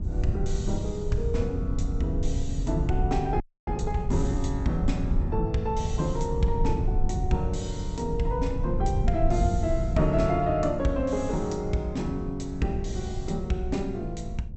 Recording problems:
treble missing; nothing above 7.9 kHz
rumble; below 92 Hz, SNR 2 dB
audio freezing; at 3.5 s

